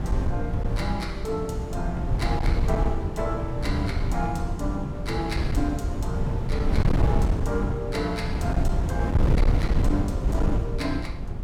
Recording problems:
distortion; hard clipping, uneven, signal-to-distortion ratio 11 dB
wind noise; below 130 Hz, SNR -4 dB

